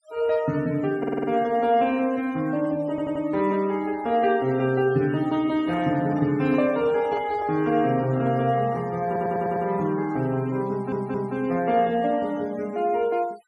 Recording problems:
noise reduction artefacts; signal-to-artefact ratio 22 dB
stutter; 4 times, first at 1 s
microphone handling noise; from 5.5 to 10 s; peak -10 dB vs average level

